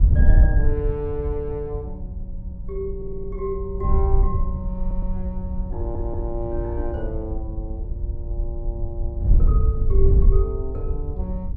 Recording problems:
wind noise; below 68 Hz, SNR -6 dB
stutter; at 3 s, at 5 s and at 6 s

